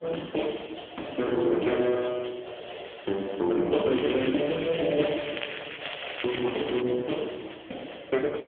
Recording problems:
telephone audio; 220 Hz to 3.4 kHz, AMR-NB
crackling; from 4 to 7 s; loose cable, SNR 8 dB

